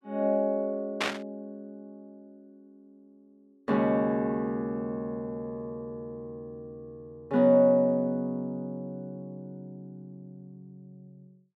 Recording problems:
static burst; at 1 s; peak +3 dB vs average level

